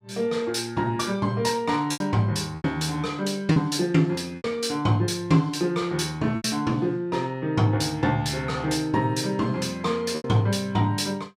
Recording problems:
packet loss; 4% of the sound replaced, filled with repeated pitch periods

